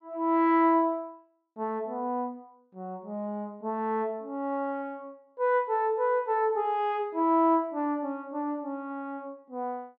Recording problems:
none

